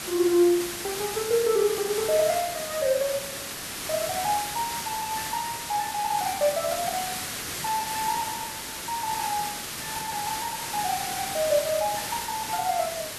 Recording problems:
background hiss; slope -1 dB per octave, SNR 4 dB

